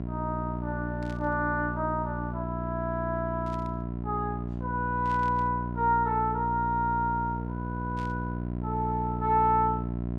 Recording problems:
hum; 60 Hz, harmonics up to 1 kHz, SNR 4 dB
burst of static; 4 times, first at 1 s; peak -14 dB vs average level

